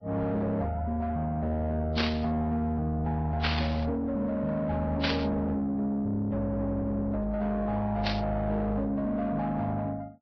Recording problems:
lossy codec; Vorbis, then Vorbis, log-spectral distance 2 dB
distortion; soft clipping, signal-to-distortion ratio 11 dB
burst of static; 4 times, first at 2 s; peak +5 dB vs average level

